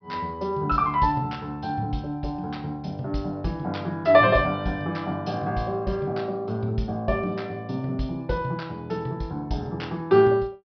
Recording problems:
low-pass filter; nothing above 5.5 kHz

